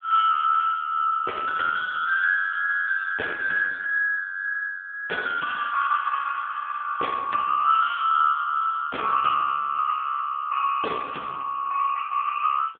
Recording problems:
telephone audio; 390 Hz to 2.7 kHz, AMR-NB

